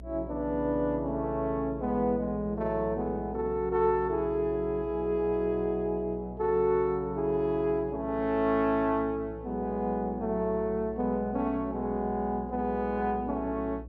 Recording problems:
electrical hum; 60 Hz, harmonics up to 660 Hz, SNR 16 dB

